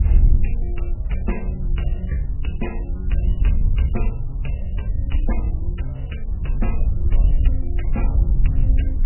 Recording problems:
lossy compression; MP3, log-spectral distance 2 dB, nothing above 2.9 kHz
hiss; SNR 23 dB
wind on the microphone; below 64 Hz, SNR -8 dB

